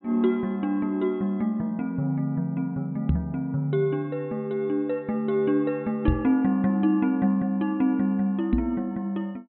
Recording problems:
low-pass filter; nothing above 4 kHz
microphone bump; at 3 s, at 6 s and at 8.5 s; peak +7 dB vs average level

